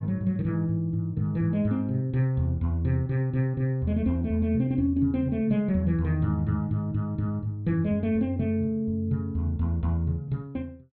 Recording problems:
low-pass filter; nothing above 4.4 kHz

